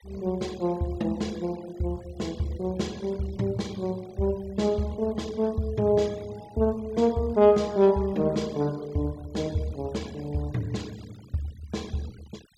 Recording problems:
noise reduction artefacts; signal-to-artefact ratio 24 dB

